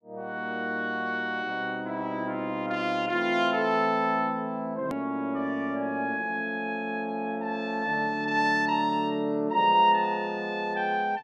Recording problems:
edit click; at 5 s

